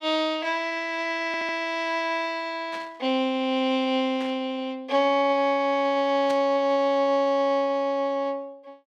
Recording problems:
audio stuttering; at 1.5 s
burst of static; at 2.5 s, at 4 s and at 6.5 s; peak -10 dB vs average level

